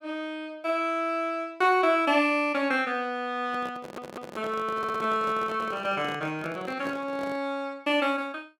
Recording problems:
handling noise; from 3.5 to 7.5 s; peak -8 dB vs average level
stutter; at 4 s and at 5 s

